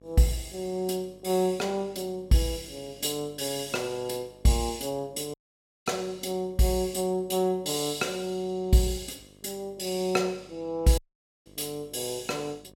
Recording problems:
electrical hum; 50 Hz, harmonics up to 1.3 kHz, SNR 26 dB
dropout; at 5.5 s for 0.5 s and at 11 s

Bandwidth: 16 kHz